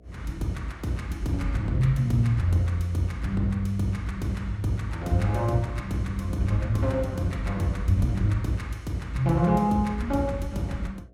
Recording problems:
hum; 60 Hz, harmonics up to 720 Hz, SNR 28 dB

